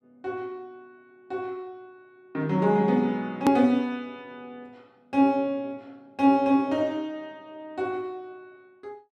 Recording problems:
edit click; at 3.5 s

